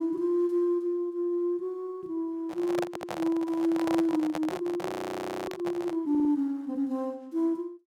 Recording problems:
handling noise; from 2.5 to 6 s; peak 0 dB vs average level
stutter; at 3 s and at 6 s
audio freezing; at 5 s for 0.5 s

